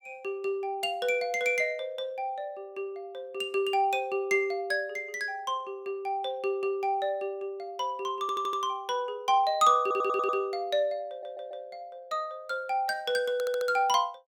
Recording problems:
audio stuttering; 4 times, first at 8 s

